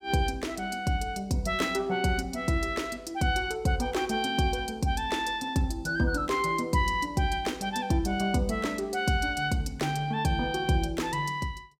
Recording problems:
none

